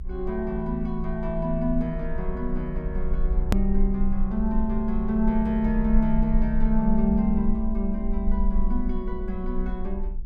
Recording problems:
hum; 60 Hz, harmonics up to 600 Hz, SNR 23 dB
rumble; below 42 Hz, strongest tone 18 Hz, SNR 4 dB
hard cut with a click; at 3.5 s

